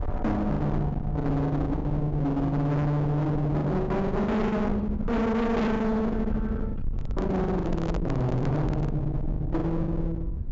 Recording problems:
treble missing; nothing above 7.5 kHz
distortion; hard clipping, uneven, signal-to-distortion ratio 5 dB
low-frequency rumble; below 200 Hz, SNR 6 dB
lost packets; 9% of the sound replaced, filled with the last packet
handling noise; from 7 to 9 s; peak -3 dB vs average level

